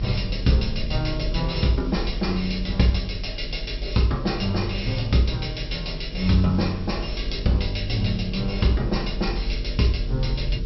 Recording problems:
treble missing; nothing above 5.5 kHz
electrical hum; 50 Hz, harmonics up to 500 Hz, SNR 13 dB
hiss; slope +3 dB per octave, SNR 22 dB
rumble; below 50 Hz, strongest tone 40 Hz, SNR 8 dB

